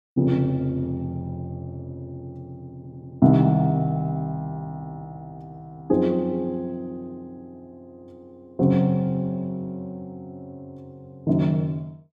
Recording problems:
audio stuttering; at 3 s

